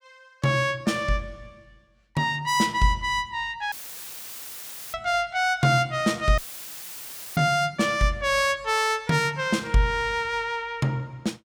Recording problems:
dropout; at 3.5 s for 1 s and at 6.5 s for 1 s; filled with static

